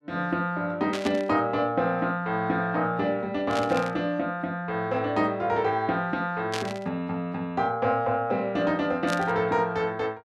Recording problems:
burst of static; 4 times, first at 1 s; peak -2 dB vs average level

